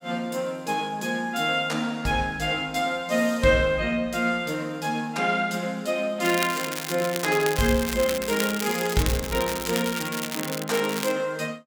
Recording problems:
crackling; from 6 to 11 s; loose cable, SNR 7 dB

